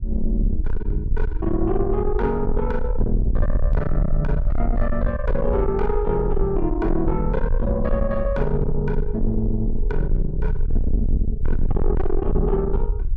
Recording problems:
distortion; soft clipping, signal-to-distortion ratio 7 dB
rumble; below 56 Hz, strongest tone 20 Hz, SNR 1 dB

